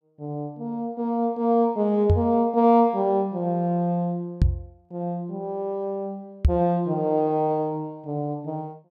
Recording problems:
microphone thump; at 2 s, at 4.5 s and at 6.5 s; peak +8 dB vs average level

